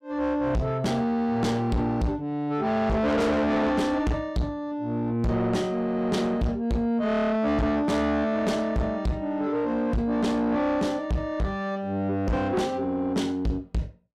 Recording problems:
distortion; soft clipping, signal-to-distortion ratio 6 dB

